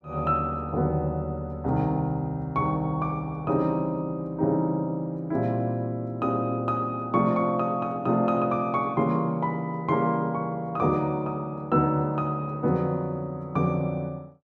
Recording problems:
none

